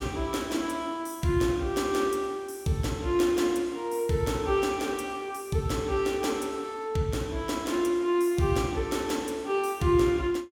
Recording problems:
none

